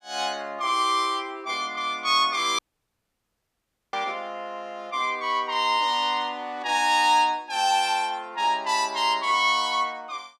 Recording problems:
dropout; at 2.5 s for 1.5 s

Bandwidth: 15 kHz